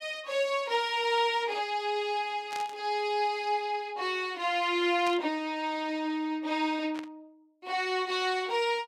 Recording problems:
static burst; at 2.5 s, at 5 s and at 7 s; peak -7 dB vs average level

